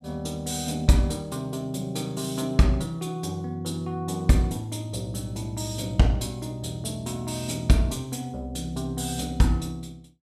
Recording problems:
none

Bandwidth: 14.5 kHz